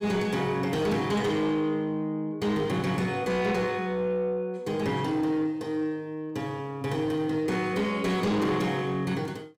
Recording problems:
distortion; soft clipping, signal-to-distortion ratio 12 dB

